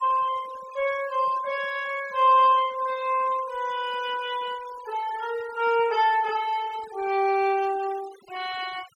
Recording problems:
denoising artefacts; signal-to-artefact ratio 20 dB

